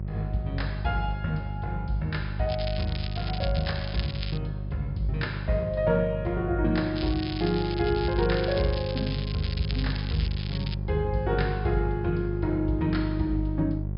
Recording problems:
low-pass filter; nothing above 5.5 kHz
hum; 50 Hz, harmonics up to 550 Hz, SNR 4 dB
crackle; from 2.5 to 4.5 s and from 7 to 11 s; loose cable, SNR 10 dB

